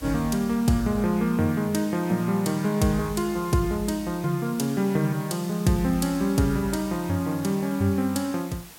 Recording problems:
background hiss; slope -1 dB per octave, SNR 19 dB

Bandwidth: 16.5 kHz